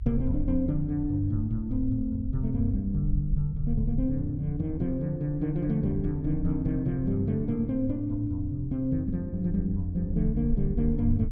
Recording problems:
rumble; below 60 Hz, SNR 8 dB

